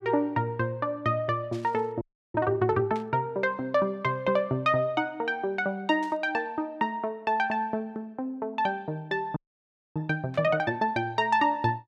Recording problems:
burst of static; 4 times, first at 1.5 s; peak -13 dB vs average level
audio freezing; at 2 s and at 9.5 s for 0.5 s

